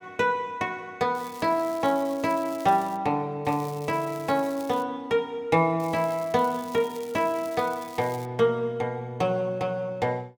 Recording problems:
crackle; from 1 to 3 s, from 3.5 to 5 s and from 6 to 8.5 s; loose cable, SNR 21 dB

